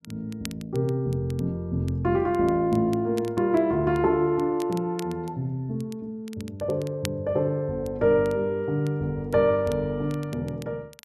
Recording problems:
crackling; vinyl, SNR 22 dB

